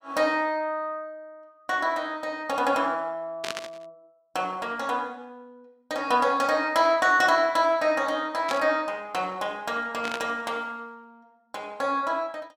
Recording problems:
static burst; at 3.5 s, at 8.5 s and at 10 s; peak -2 dB vs average level

